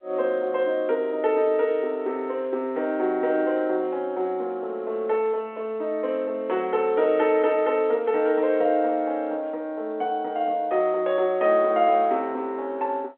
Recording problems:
telephone audio; 280 Hz to 3.8 kHz, G.711

